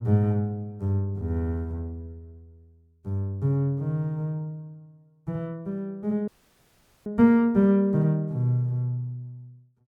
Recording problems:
dropout; at 6.5 s for 1 s

